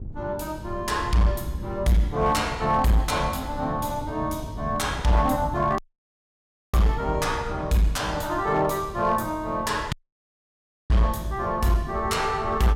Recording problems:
distorted audio; hard clipping, signal-to-distortion ratio 12 dB
wind noise; below 150 Hz, SNR 12 dB
audio cutting out; at 6 s for 1 s and at 10 s for 1 s

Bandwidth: 16.5 kHz